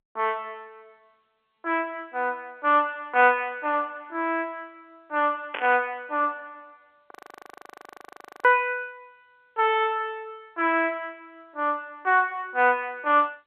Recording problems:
phone line; 260 Hz to 3.2 kHz, G.711
burst of static; at 5.5 s; peak -3 dB vs average level
audio freezing; at 7 s for 1.5 s

